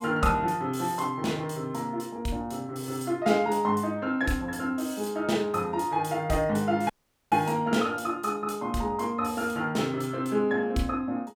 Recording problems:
audio cutting out; at 7 s

